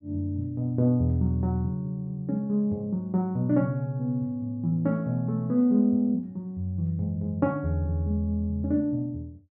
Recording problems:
none

